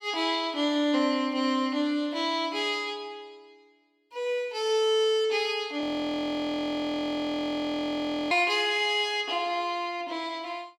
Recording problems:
audio freezing; at 6 s for 2.5 s

